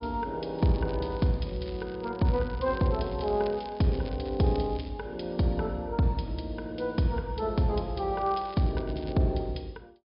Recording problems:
low-pass filter; nothing above 5.5 kHz
crackling; from 0.5 to 5 s and at 8 s; loose cable, SNR 23 dB

